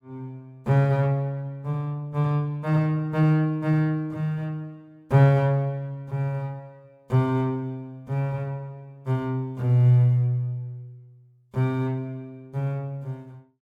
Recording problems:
none

